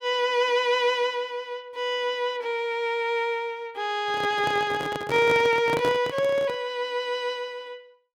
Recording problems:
microphone handling noise; from 4 to 6.5 s; peak -1 dB vs average level

